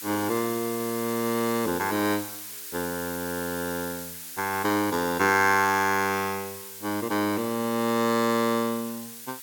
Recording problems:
hiss; SNR 10 dB

